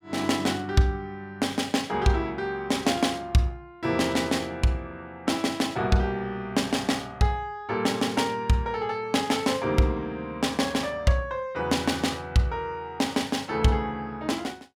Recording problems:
none

